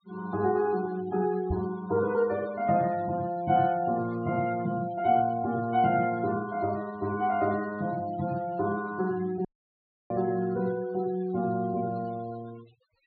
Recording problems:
treble missing; nothing above 4.5 kHz
denoising artefacts; signal-to-artefact ratio 21 dB
knock on the microphone; at 1.5 s; peak 0 dB vs average level
dropout; at 9.5 s for 0.5 s

